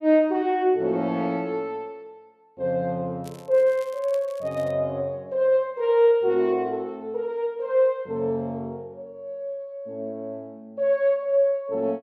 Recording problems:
crackle; from 3 to 4.5 s; loose cable, SNR 27 dB

